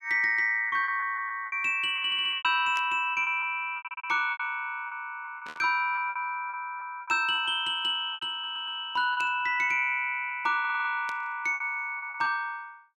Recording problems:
packet loss; 11% of the sound replaced, filled with repeated pitch periods
audio stuttering; 4 times, first at 2 s
burst of static; 4 times, first at 3 s; peak -9 dB vs average level

